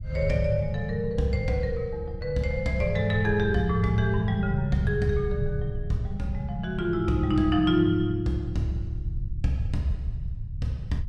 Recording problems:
rumble; below 98 Hz, SNR 10 dB

